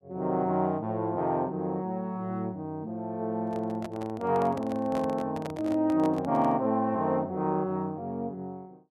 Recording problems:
handling noise; from 3.5 to 6.5 s; peak -5 dB vs average level

